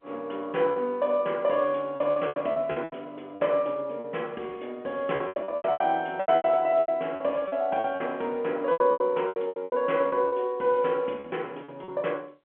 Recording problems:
telephone audio; 240 Hz to 3.3 kHz, G.711
packet loss; 14% of the sound replaced, filled with repeated pitch periods

